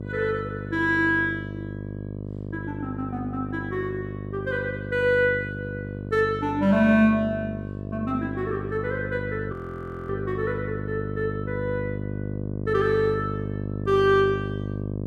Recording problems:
mains hum; 50 Hz, harmonics up to 700 Hz, SNR 7 dB
audio freezing; at 9.5 s for 0.5 s

